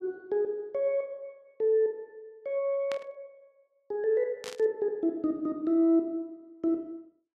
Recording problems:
burst of static; at 3 s and at 4.5 s; peak -7 dB vs average level

